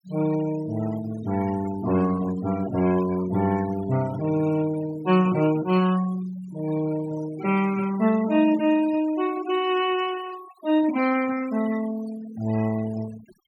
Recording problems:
noise reduction artefacts; signal-to-artefact ratio 16 dB

